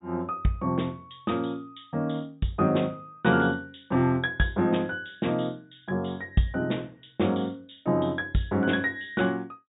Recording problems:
treble missing; nothing above 4 kHz

